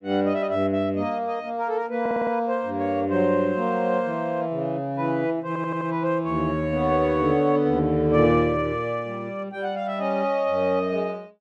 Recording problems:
audio stuttering; at 2 s and at 5.5 s

